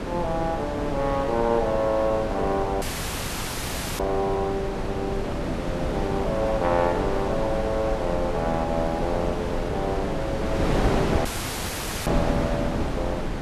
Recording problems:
wind on the microphone; below 610 Hz, SNR 2 dB
dropout; at 3 s for 1 s and at 11 s for 1 s

